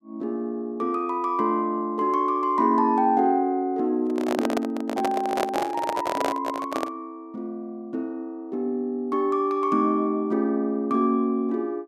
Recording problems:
handling noise; from 4 to 7 s; peak +2 dB vs average level

